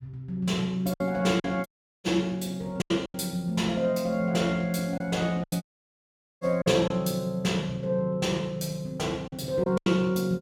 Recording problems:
lost packets; 5% of the sound replaced, filled with silence
audio cutting out; at 1.5 s and at 5.5 s for 1 s

